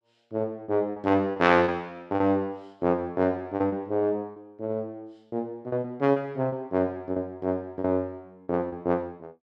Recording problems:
packet loss; 7% of the sound replaced, filled with repeated pitch periods

